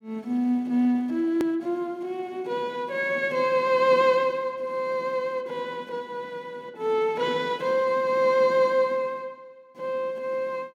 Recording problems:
hard cut with a click; at 1.5 s

